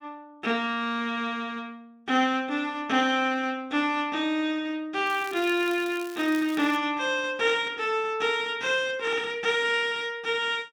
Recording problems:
crackling; from 5 to 7 s; loose cable, SNR 19 dB

